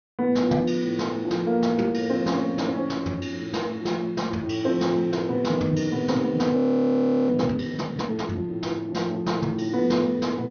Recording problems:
treble cut off; nothing above 6.4 kHz
audio freezing; at 6.5 s for 0.5 s

